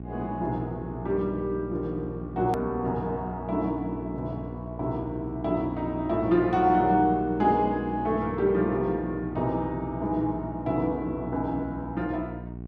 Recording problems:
hum; 60 Hz, harmonics up to 780 Hz, SNR 11 dB
hard cut with a click; at 2.5 s

